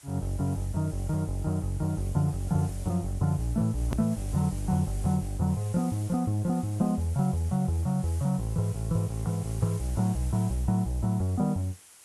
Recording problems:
codec artefacts; AAC, log-spectral distance 6 dB, nothing above 13.1 kHz
hiss; slope 0 dB per octave, SNR 19 dB
hard cut with a click; at 4 s

